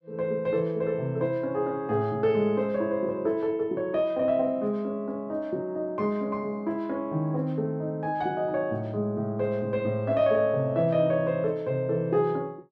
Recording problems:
none

